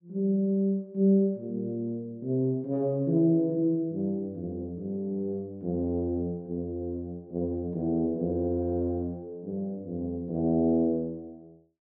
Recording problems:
none

